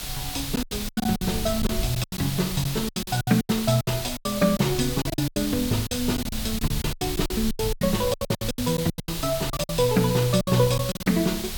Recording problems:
background hiss; slope +1 dB per octave, SNR 7 dB
rumble; below 90 Hz, SNR 12 dB
packet loss; 18% of the sound replaced, filled with silence

